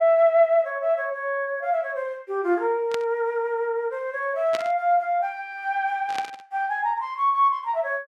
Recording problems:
static burst; at 3 s, at 4.5 s and at 6 s; peak -4 dB vs average level

